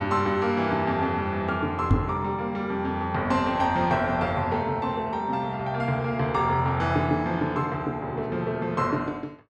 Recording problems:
knock on the microphone; at 2 s; peak +8 dB vs average level

